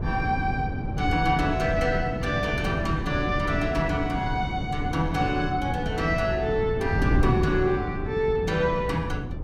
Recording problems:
wind on the microphone; below 220 Hz, SNR 4 dB

